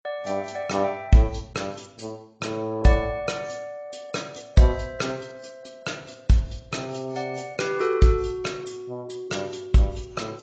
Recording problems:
lossy codec; AAC, log-spectral distance 4 dB, nothing above 7.3 kHz

